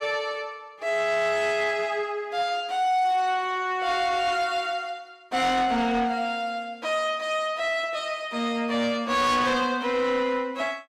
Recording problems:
distortion; soft clipping, signal-to-distortion ratio 11 dB

